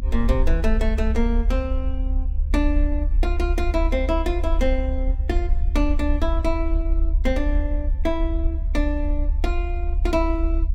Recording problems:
rumble; below 66 Hz, strongest tone 36 Hz, SNR -2 dB

